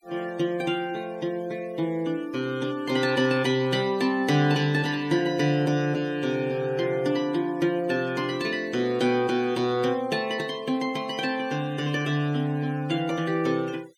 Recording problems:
noise reduction artefacts; signal-to-artefact ratio 24 dB

